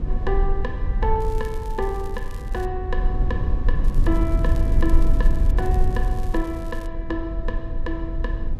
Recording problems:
low-frequency rumble; below 56 Hz, SNR -5 dB
crackling; from 1 to 2.5 s, from 4 to 5.5 s and from 5.5 to 7 s; loose cable, SNR 19 dB

